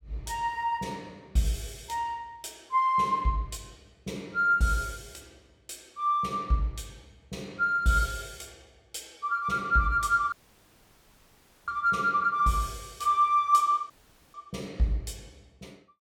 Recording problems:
dropout; at 10 s for 1.5 s and at 14 s

